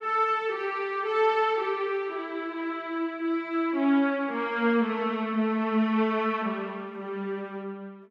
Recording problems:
none

